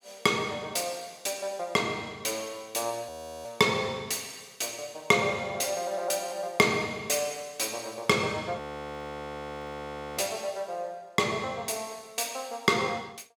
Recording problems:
frozen audio; at 3 s and at 8.5 s for 1.5 s

